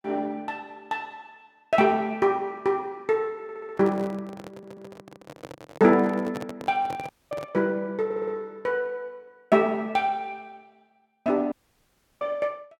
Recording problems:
audio stuttering; at 3.5 s, at 4.5 s and at 8 s
microphone handling noise; from 3.5 to 7.5 s; peak -5 dB vs average level
dropout; at 7 s and at 12 s for 0.5 s

